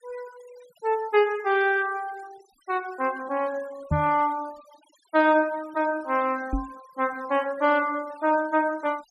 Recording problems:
noise reduction artefacts; signal-to-artefact ratio 23 dB
microphone thump; at 4 s and at 6.5 s; peak +3 dB vs average level

